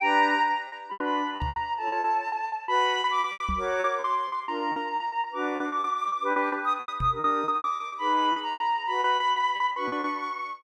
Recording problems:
lost packets; 18% of the sound replaced, filled with repeated pitch periods
microphone bump; at 1.5 s, at 3.5 s and at 7 s; peak -2 dB vs average level

